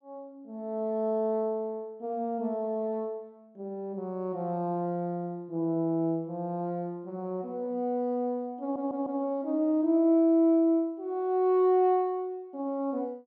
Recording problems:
audio stuttering; at 8.5 s

